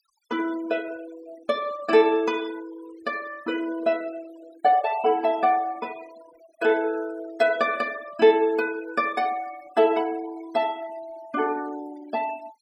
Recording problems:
noise reduction artefacts; signal-to-artefact ratio 21 dB

